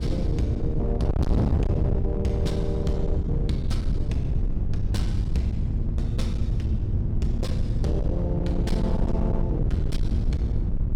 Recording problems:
distorted audio; hard clipping, signal-to-distortion ratio 7 dB
low-frequency rumble; below 82 Hz, SNR 3 dB
wind on the microphone; below 130 Hz, SNR -2 dB

